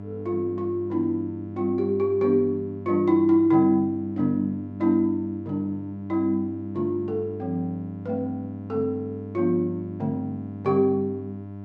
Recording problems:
hum; 50 Hz, harmonics up to 1 kHz, SNR 12 dB

